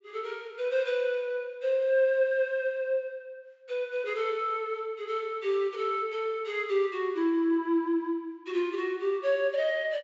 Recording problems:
treble missing; nothing above 8 kHz

